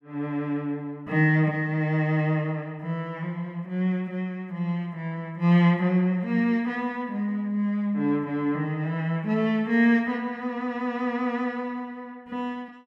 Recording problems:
none

